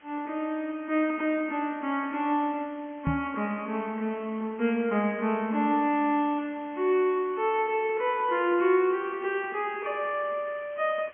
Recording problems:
low-pass filter; nothing above 3.2 kHz
background hiss; SNR 27 dB
microphone thump; at 3 s; peak +3 dB vs average level

